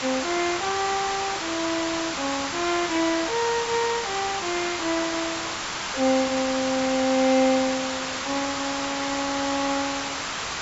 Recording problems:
treble cut off; nothing above 8 kHz
hiss; SNR 2 dB

